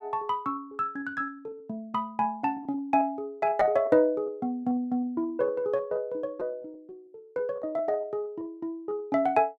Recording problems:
lost packets; 9% of the sound replaced, filled with repeated pitch periods

